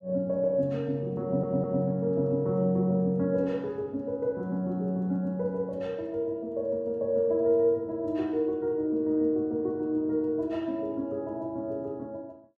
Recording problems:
stutter; at 1 s

